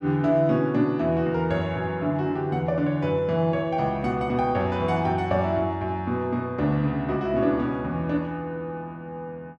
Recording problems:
none

